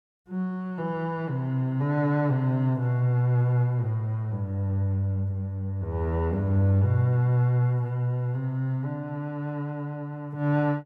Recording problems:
none

